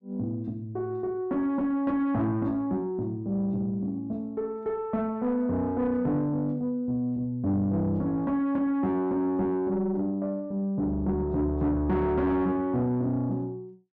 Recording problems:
distortion; soft clipping, signal-to-distortion ratio 11 dB

